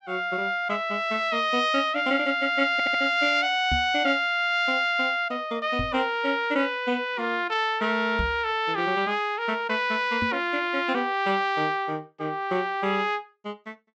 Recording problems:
treble cut off; nothing above 7.9 kHz
stutter; at 2.5 s
knock on the microphone; 4 times, first at 3.5 s; peak -2 dB vs average level

